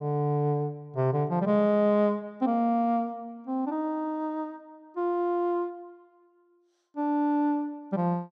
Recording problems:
none

